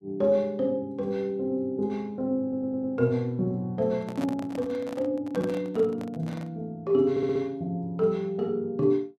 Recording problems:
stutter; at 2.5 s and at 7 s
microphone handling noise; from 4 to 6.5 s; peak -5 dB vs average level

